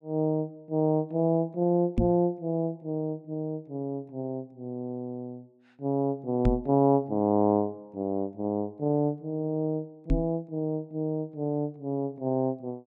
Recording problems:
knock on the microphone; at 2 s, at 6.5 s and at 10 s; peak +7 dB vs average level

